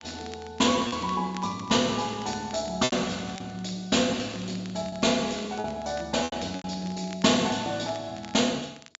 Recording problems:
treble missing; nothing above 7.4 kHz
crackling; vinyl, SNR 20 dB
packet loss; 5% of the sound replaced, filled with repeated pitch periods

